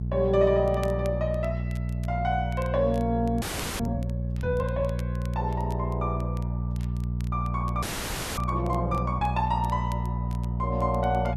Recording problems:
mains hum; 60 Hz, harmonics up to 420 Hz, SNR 2 dB
crackle; vinyl, SNR 24 dB
audio freezing; at 3.5 s and at 8 s for 0.5 s

